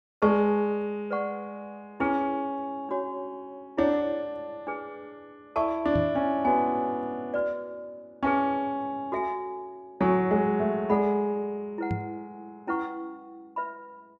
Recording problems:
knock on the microphone; at 6 s and at 12 s; peak +1 dB vs average level

